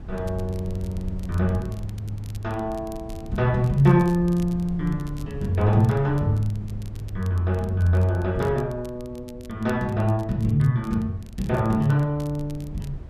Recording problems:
wind noise; below 120 Hz, SNR 15 dB
crackle; vinyl, SNR 27 dB

